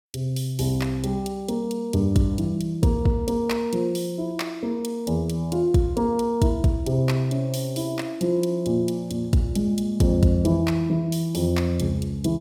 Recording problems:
none

